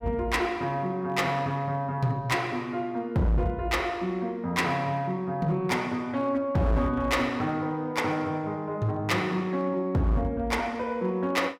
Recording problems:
distortion; hard clipping, signal-to-distortion ratio 11 dB

